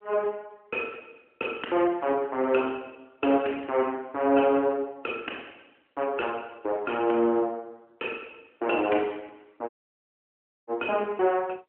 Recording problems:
phone line; 240 Hz to 3.2 kHz, AMR-NB
dropout; at 9.5 s for 1 s

